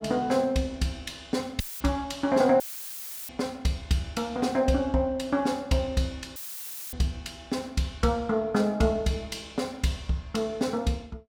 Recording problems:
audio cutting out; at 1.5 s, at 2.5 s for 0.5 s and at 6.5 s for 0.5 s; filled with static

